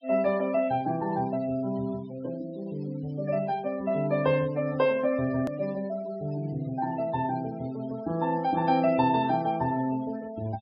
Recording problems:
treble missing; nothing above 5.4 kHz
denoising artefacts; signal-to-artefact ratio 21 dB
hard cut with a click; at 5.5 s

